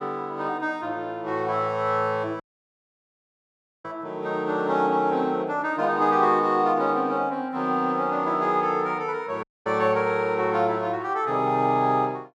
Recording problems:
audio cutting out; at 2.5 s for 1.5 s and at 9.5 s

